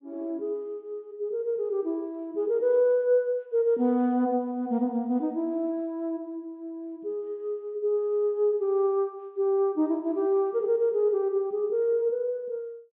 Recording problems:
treble cut off; nothing above 4 kHz

